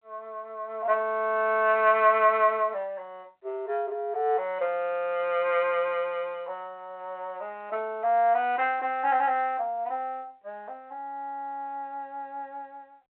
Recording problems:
phone line; 340 Hz to 3.3 kHz, G.726

